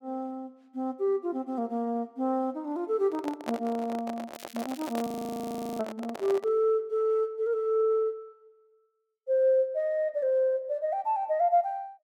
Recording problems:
handling noise; from 3 to 6.5 s; peak -1 dB vs average level
crackle; at 4.5 s; loose cable, SNR 19 dB
audio freezing; at 5 s for 0.5 s

